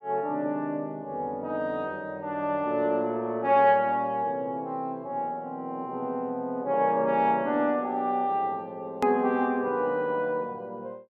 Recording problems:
click at an edit; at 9 s

